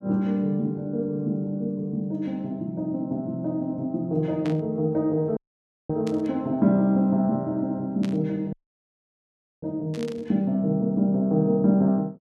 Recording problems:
burst of static; 4 times, first at 4.5 s; peak -10 dB vs average level
audio cutting out; at 5.5 s for 0.5 s and at 8.5 s for 1 s

